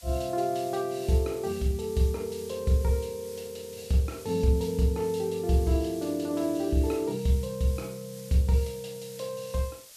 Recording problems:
hiss; SNR 18 dB

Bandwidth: 14 kHz